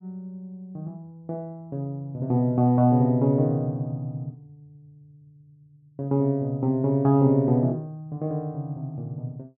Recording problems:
none

